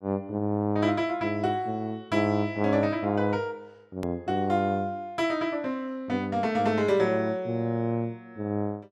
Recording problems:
click at an edit; at 4 s

